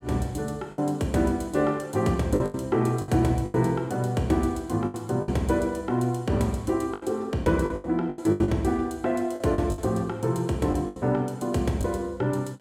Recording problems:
lost packets; 9% of the sound replaced, filled with the last packet

